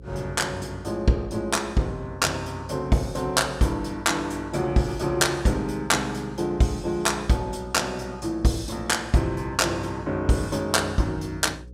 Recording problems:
hum; 60 Hz, harmonics up to 540 Hz, SNR 19 dB

